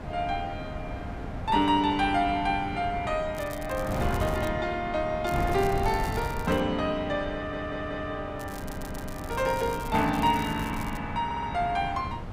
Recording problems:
wind on the microphone; below 400 Hz, SNR 8 dB
crackle; from 3.5 to 4.5 s, from 5.5 to 6.5 s and from 8.5 to 11 s; loose cable, SNR 18 dB
stutter; at 7.5 s, at 8.5 s and at 11 s

